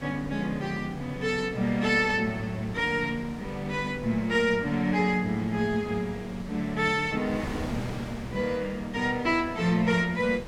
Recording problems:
wind noise; below 730 Hz, SNR 14 dB

